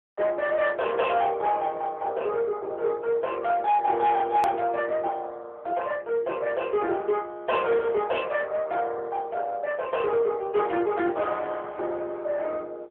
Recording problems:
telephone audio; 300 Hz to 3.2 kHz, AMR-NB
distortion; soft clipping, signal-to-distortion ratio 12 dB
hard cut with a click; at 4.5 s

